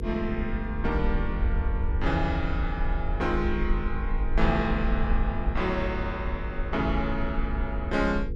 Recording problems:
hum; 50 Hz, harmonics up to 500 Hz, SNR 7 dB
rumble; below 62 Hz, SNR 2 dB

